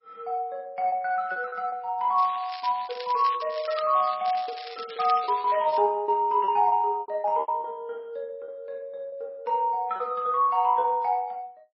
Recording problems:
codec artefacts; MP3, log-spectral distance 4 dB, nothing above 5.5 kHz
lost packets; 9% of the sound replaced, filled with repeated pitch periods
crackling; from 2 to 6 s; loose cable, SNR 15 dB

